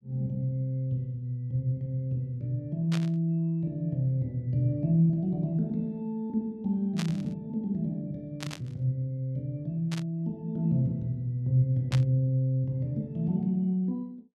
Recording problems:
burst of static; 5 times, first at 3 s; peak -3 dB vs average level

